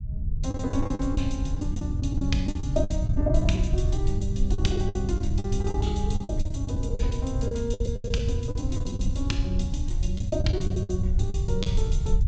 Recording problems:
low-pass filter; nothing above 8 kHz
rumble; below 94 Hz, SNR -2 dB
packet loss; 14% of the sound replaced, filled with the last packet

